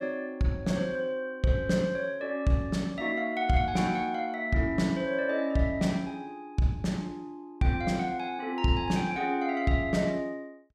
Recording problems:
none

